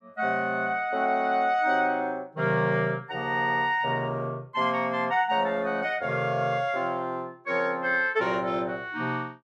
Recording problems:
none

